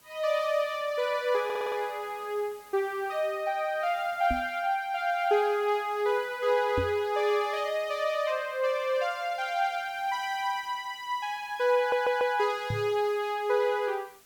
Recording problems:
hiss; slope -1 dB per octave, SNR 27 dB
audio stuttering; at 1.5 s and at 12 s
microphone bump; at 4.5 s, at 7 s and at 13 s; peak -1 dB vs average level

